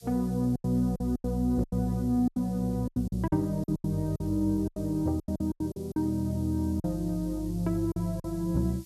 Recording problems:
background hiss; slope +7 dB per octave, SNR 24 dB
lost packets; 13% of the sound replaced, filled with silence

